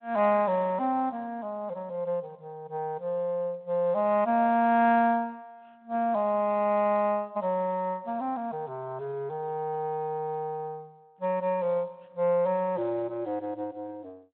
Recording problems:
telephone audio; 280 Hz to 3.5 kHz, Speex

